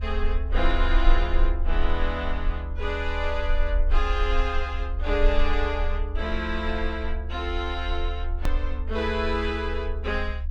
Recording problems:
low-frequency rumble; below 50 Hz, strongest tone 24 Hz, SNR 0 dB
hard cut with a click; at 8.5 s

